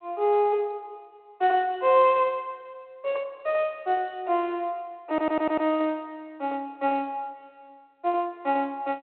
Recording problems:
phone line; 300 Hz to 3.6 kHz, G.726
audio stuttering; at 5 s

